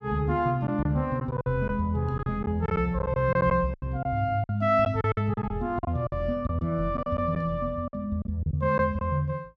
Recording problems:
lost packets; 10% of the sound replaced, filled with silence

